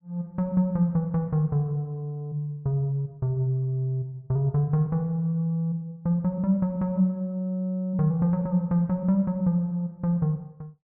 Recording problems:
none

